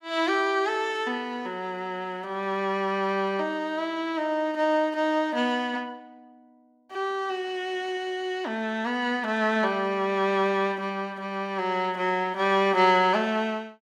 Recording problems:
none

